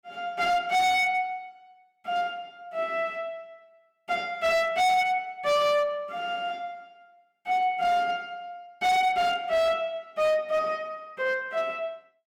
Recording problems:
distorted audio; hard clipping, signal-to-distortion ratio 7 dB

